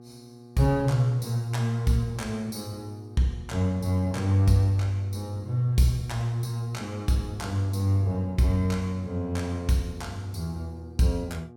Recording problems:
mains hum; 60 Hz, harmonics up to 1.2 kHz, SNR 21 dB

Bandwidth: 17 kHz